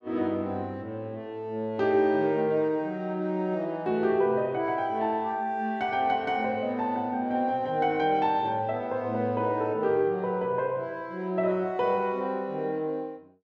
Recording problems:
none

